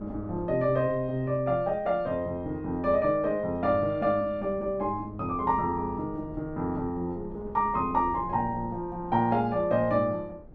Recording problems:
wind noise; below 320 Hz, SNR 18 dB

